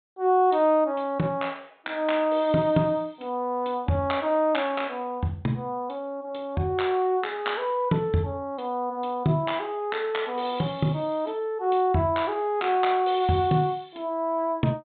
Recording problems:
low-pass filter; nothing above 4 kHz

